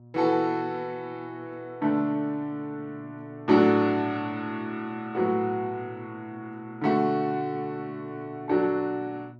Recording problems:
electrical hum; 60 Hz, harmonics up to 960 Hz, SNR 22 dB

